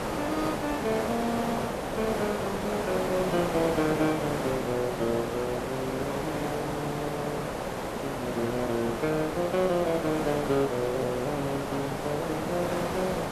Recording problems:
hiss; SNR 1 dB

